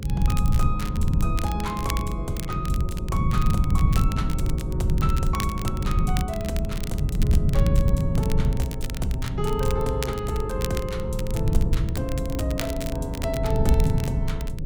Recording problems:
mains hum; 60 Hz, harmonics up to 540 Hz, SNR 8 dB
low-frequency rumble; below 140 Hz, SNR -4 dB
wind on the microphone; below 300 Hz, SNR 18 dB
crackling; vinyl, SNR 9 dB

